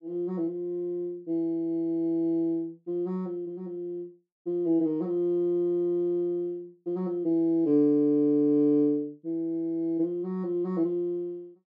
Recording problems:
none

